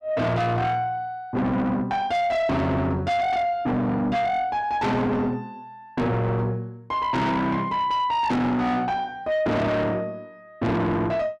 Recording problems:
distortion; soft clipping, signal-to-distortion ratio 6 dB

